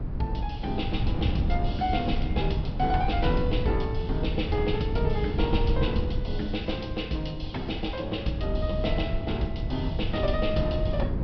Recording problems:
low-pass filter; nothing above 5.5 kHz
wind noise; below 120 Hz, SNR 1 dB

